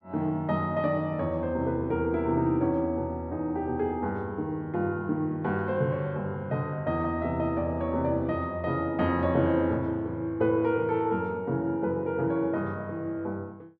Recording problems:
none

